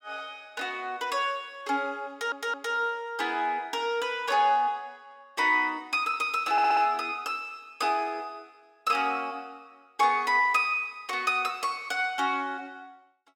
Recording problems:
audio stuttering; at 2 s and at 6.5 s

